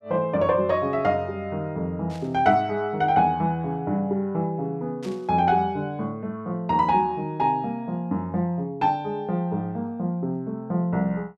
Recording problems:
static burst; at 2 s and at 5 s; peak -14 dB vs average level

